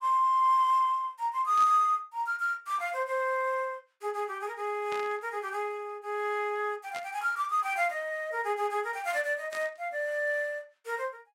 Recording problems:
static burst; 4 times, first at 1.5 s; peak -9 dB vs average level

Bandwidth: 16 kHz